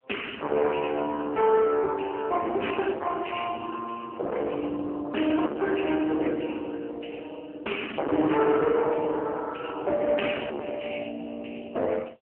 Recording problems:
telephone audio; 260 Hz to 3.1 kHz, AMR-NB
distorted audio; soft clipping, signal-to-distortion ratio 5 dB

